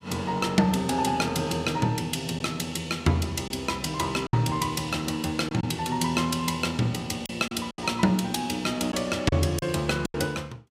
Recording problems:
packet loss; 4% of the sound replaced, filled with silence

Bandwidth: 15.5 kHz